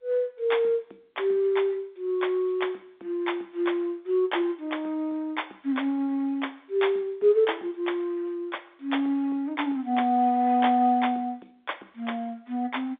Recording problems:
telephone audio; 260 Hz to 3.6 kHz, G.711

